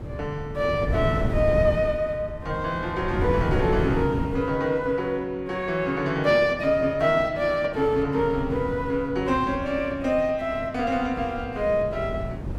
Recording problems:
wind noise; below 220 Hz, SNR 8 dB

